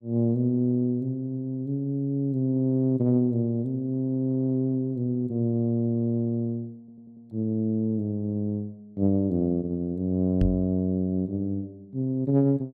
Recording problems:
stutter; at 7 s
microphone thump; at 10 s; peak +4 dB vs average level

